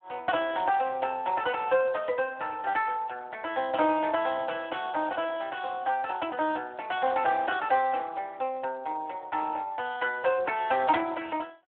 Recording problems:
phone line; 240 Hz to 3.5 kHz, Speex

